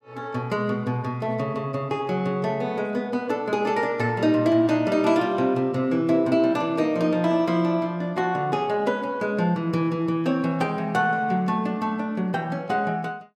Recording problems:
none

